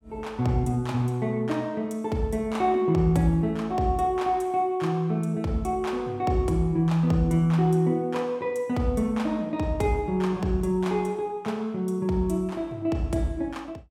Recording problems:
none

